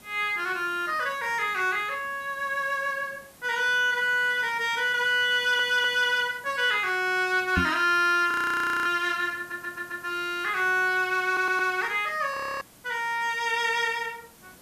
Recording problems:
hiss; slope -3 dB per octave, SNR 25 dB
stutter; at 5.5 s, at 9.5 s and at 11 s
microphone thump; at 7.5 s; peak +2 dB vs average level
audio freezing; at 8.5 s for 0.5 s and at 12 s

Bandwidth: 14.5 kHz